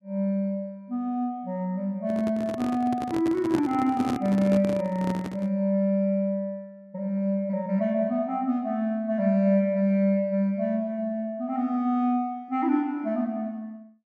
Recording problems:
microphone handling noise; from 2 to 5.5 s; peak 0 dB vs average level

